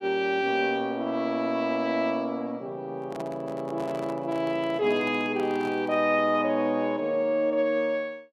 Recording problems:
handling noise; from 3 to 6 s; peak -9 dB vs average level

